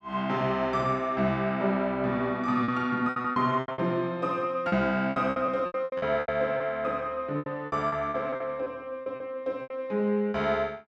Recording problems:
packet loss; 12% of the sound replaced, filled with repeated pitch periods

